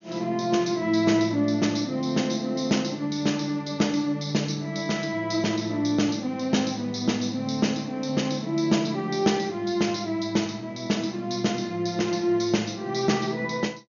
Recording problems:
treble cut off; nothing above 6.8 kHz

